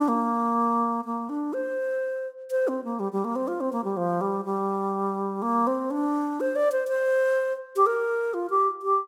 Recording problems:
none

